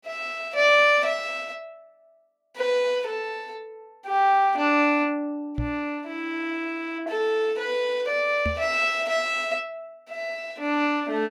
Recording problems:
microphone thump; at 5.5 s and at 8.5 s; peak -2 dB vs average level

